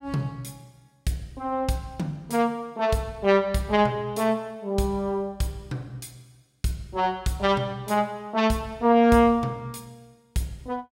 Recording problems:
none

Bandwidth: 16 kHz